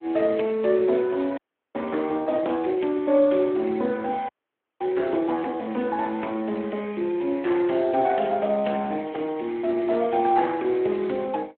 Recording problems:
phone line; 220 Hz to 3.4 kHz, Speex
frozen audio; at 1.5 s and at 4.5 s for 0.5 s

